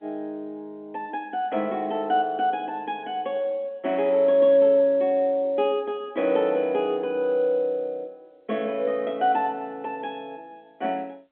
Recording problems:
phone line; 220 Hz to 3.5 kHz, G.711

